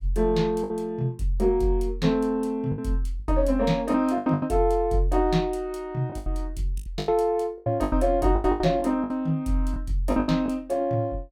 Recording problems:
packet loss; 11% of the sound replaced, filled with the last packet

